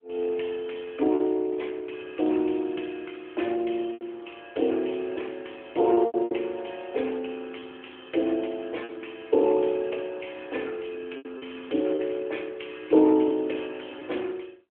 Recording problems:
phone line; 260 Hz to 3.4 kHz, AMR-NB
lost packets; 4% of the sound replaced, filled with repeated pitch periods

